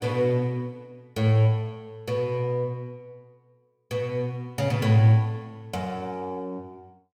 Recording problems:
none

